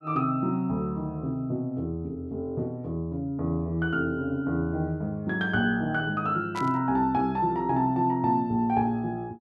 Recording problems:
burst of static; at 6.5 s; peak -9 dB vs average level

